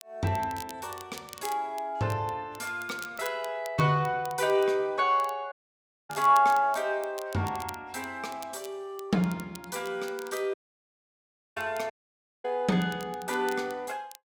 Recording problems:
crackling; vinyl, SNR 18 dB
audio cutting out; at 5.5 s for 0.5 s, at 11 s for 1 s and at 12 s for 0.5 s

